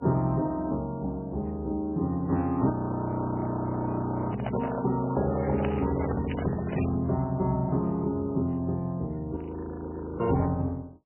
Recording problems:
lossy compression; AAC, then MP3, log-spectral distance 3 dB
audio freezing; at 2.5 s for 1.5 s and at 9.5 s for 1 s
microphone handling noise; from 4.5 to 7 s; peak -2 dB vs average level
crackling; from 5 to 7 s and at 10 s; loose cable, SNR 18 dB

